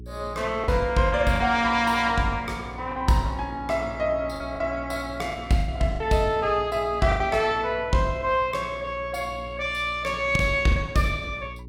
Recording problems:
hum; 60 Hz, harmonics up to 420 Hz, SNR 17 dB
packet loss; 5% of the sound replaced, filled with the last packet

